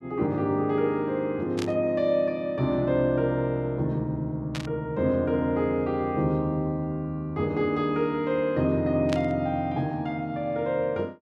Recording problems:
burst of static; at 1.5 s, at 4.5 s and at 9 s; peak -3 dB vs average level

